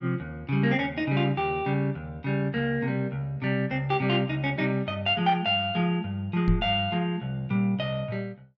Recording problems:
low-pass filter; nothing above 7.5 kHz
microphone thump; at 6.5 s; peak +5 dB vs average level

